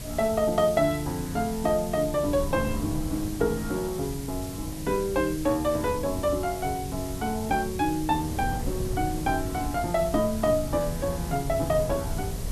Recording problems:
background hiss; SNR 14 dB
wind noise; below 150 Hz, SNR 9 dB

